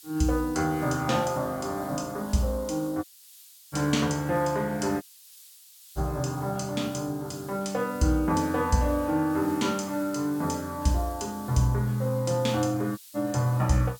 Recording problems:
background hiss; slope +7 dB per octave, SNR 20 dB
audio cutting out; at 3 s for 0.5 s, at 5 s for 1 s and at 13 s

